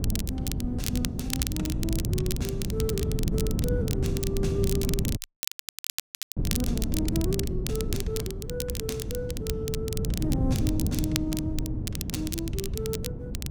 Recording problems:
wind noise; below 190 Hz, SNR -3 dB
crackle; vinyl, SNR 2 dB
audio freezing; at 5 s for 1 s

